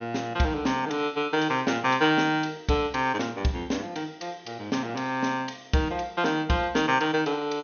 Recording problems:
treble missing; nothing above 6.4 kHz

